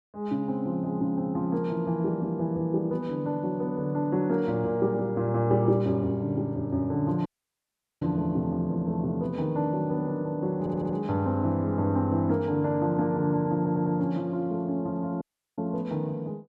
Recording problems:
dropout; at 7.5 s for 1 s and at 15 s
stutter; at 11 s and at 14 s

